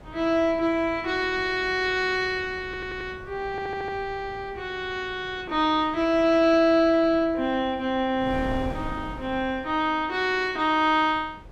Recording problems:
wind on the microphone; below 410 Hz, SNR 18 dB
audio stuttering; at 2.5 s and at 3.5 s

